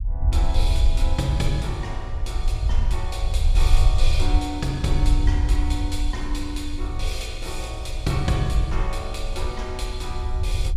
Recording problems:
rumble; below 62 Hz, strongest tone 22 Hz, SNR -4 dB

